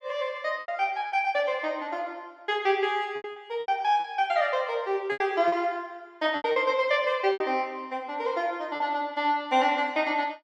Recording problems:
packet loss; 7% of the sound replaced, filled with repeated pitch periods

